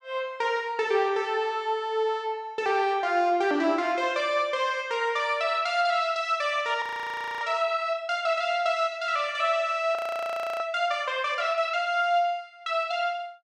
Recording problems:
audio freezing; at 7 s for 0.5 s and at 10 s for 0.5 s

